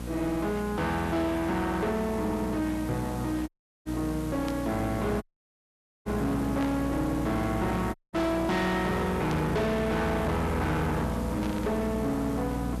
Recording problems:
distortion; hard clipping, uneven, signal-to-distortion ratio 7 dB
mains hum; 60 Hz, harmonics up to 780 Hz, SNR 7 dB
background hiss; slope -4 dB per octave, SNR 16 dB
audio cutting out; at 3.5 s, at 5 s for 1 s and at 8 s
static burst; 4 times, first at 4.5 s; peak -8 dB vs average level

